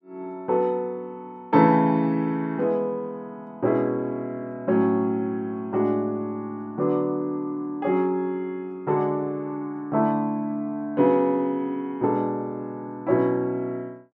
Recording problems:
none

